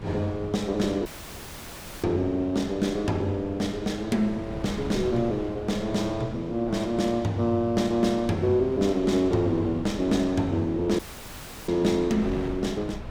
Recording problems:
wind noise; below 440 Hz, SNR 14 dB
audio cutting out; at 1 s for 1 s and at 11 s for 0.5 s

